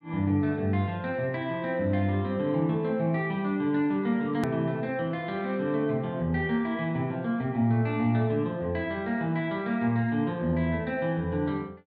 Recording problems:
edit click; at 4.5 s

